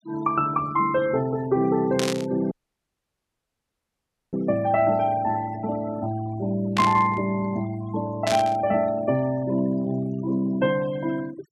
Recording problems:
noise reduction artefacts; signal-to-artefact ratio 19 dB
burst of static; at 2 s, at 7 s and at 8.5 s; peak 0 dB vs average level
dropout; at 2.5 s for 2 s

